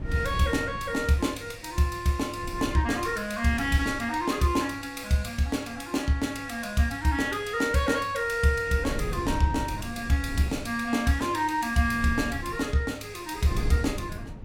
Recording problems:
wind on the microphone; below 160 Hz, SNR 10 dB

